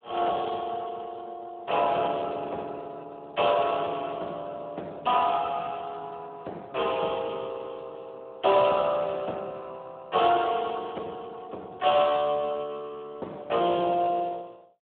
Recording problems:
telephone audio; 240 Hz to 2.8 kHz, Speex

